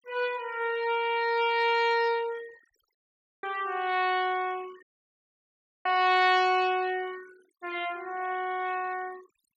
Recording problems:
noise reduction artefacts; signal-to-artefact ratio 22 dB
dropout; at 3 s and at 5 s for 1 s

